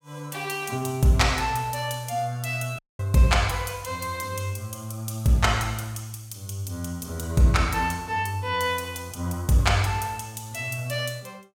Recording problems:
dropout; at 3 s

